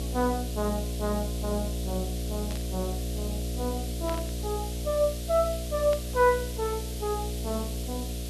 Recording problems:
hum; 60 Hz, harmonics up to 720 Hz, SNR 4 dB
hiss; SNR 10 dB
burst of static; at 2.5 s, at 4 s and at 6 s; peak -6 dB vs average level

